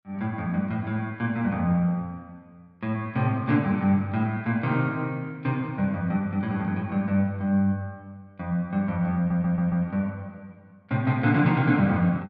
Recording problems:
stutter; at 9 s

